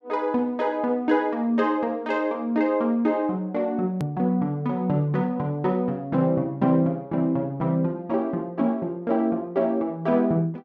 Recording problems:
edit click; at 4 s

